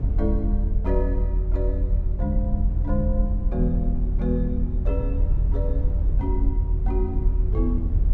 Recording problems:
low-frequency rumble; below 78 Hz, strongest tone 42 Hz, SNR -6 dB

